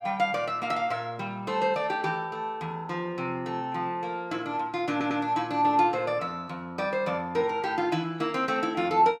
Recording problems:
audio stuttering; at 5 s

